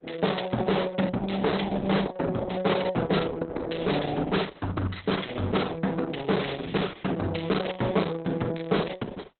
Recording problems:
codec artefacts; Opus, log-spectral distance 6 dB, nothing above 4.1 kHz
distortion; soft clipping, signal-to-distortion ratio 11 dB

